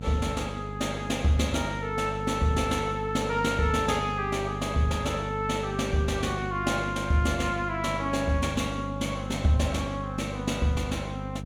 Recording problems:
hum; 50 Hz, harmonics up to 700 Hz, SNR 8 dB

